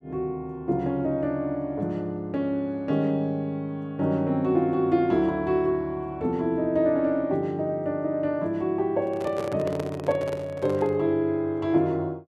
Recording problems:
handling noise; from 9 to 11 s; peak -3 dB vs average level

